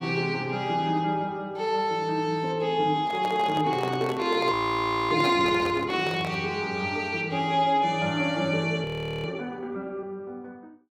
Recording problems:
microphone handling noise; from 3 to 6.5 s; peak -3 dB vs average level
audio freezing; at 4.5 s for 0.5 s and at 9 s

